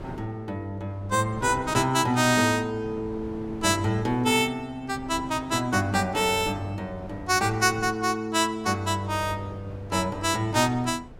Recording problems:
wind on the microphone; below 430 Hz, SNR 18 dB

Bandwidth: 16.5 kHz